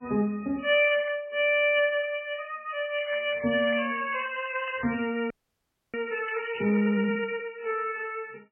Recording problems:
lossy codec; MP3, log-spectral distance 9 dB, nothing above 2.4 kHz
crackling; at 1 s, from 3 to 5 s and at 6.5 s; loose cable, SNR 14 dB
frozen audio; at 5.5 s for 0.5 s

